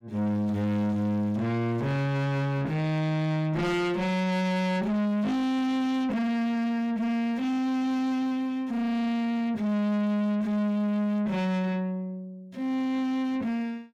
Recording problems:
distorted audio; soft clipping, signal-to-distortion ratio 8 dB

